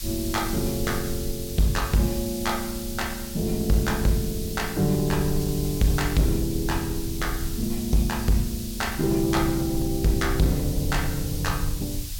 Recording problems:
distorted audio; hard clipping, signal-to-distortion ratio 10 dB
hiss; slope +5 dB per octave, SNR 10 dB
low-frequency rumble; below 78 Hz, SNR 9 dB

